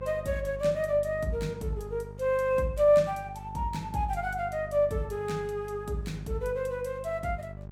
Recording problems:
electrical hum; 50 Hz, harmonics up to 800 Hz, SNR 14 dB

